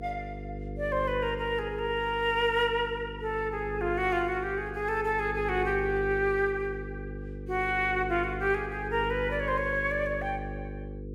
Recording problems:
hum; 50 Hz, harmonics up to 500 Hz, SNR 10 dB

